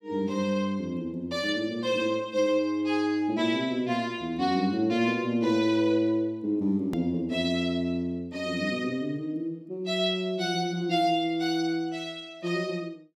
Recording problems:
click at an edit; at 7 s

